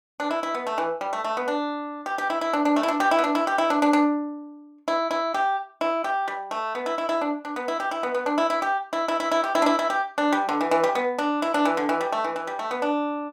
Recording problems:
none

